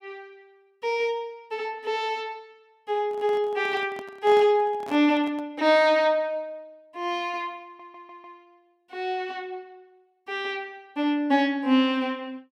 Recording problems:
handling noise; from 3 to 5.5 s; peak -10 dB vs average level
audio stuttering; at 7.5 s

